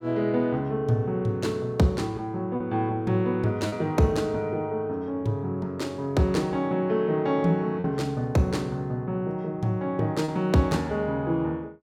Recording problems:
packet loss; 1.4% of the sound replaced, filled with repeated pitch periods

